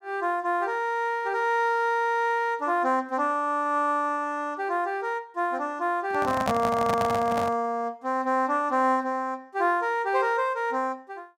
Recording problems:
microphone handling noise; from 6 to 7.5 s; peak +2 dB vs average level

